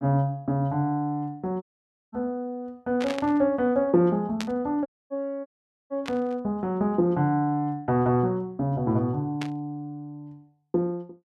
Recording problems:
dropout; at 1.5 s for 0.5 s, at 5 s and at 5.5 s
static burst; 4 times, first at 3 s; peak -3 dB vs average level

